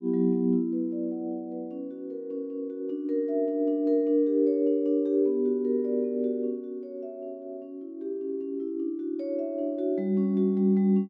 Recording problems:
none

